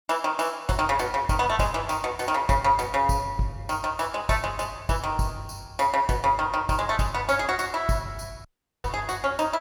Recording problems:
audio cutting out; at 8.5 s

